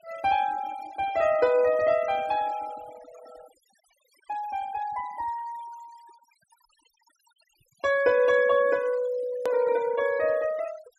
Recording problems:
denoising artefacts; signal-to-artefact ratio 20 dB
hard cut with a click; at 9.5 s

